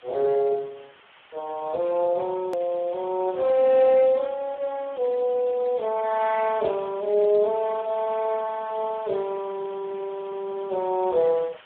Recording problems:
phone line; 320 Hz to 2.1 kHz, Speex
background hiss; SNR 24 dB
click at an edit; at 2.5 s

